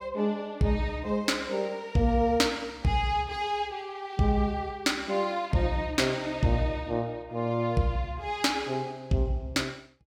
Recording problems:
none

